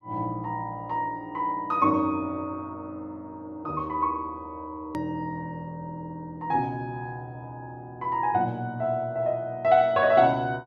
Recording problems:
click at an edit; at 5 s

